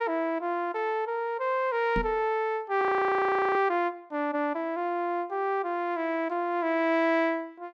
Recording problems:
microphone bump; at 2 s; peak -1 dB vs average level
frozen audio; at 3 s for 0.5 s

